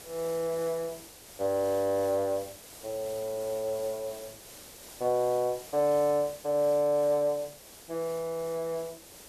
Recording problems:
hiss; SNR 16 dB

